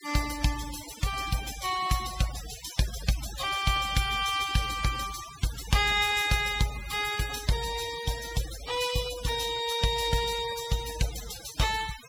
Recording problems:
noise reduction artefacts; signal-to-artefact ratio 11 dB

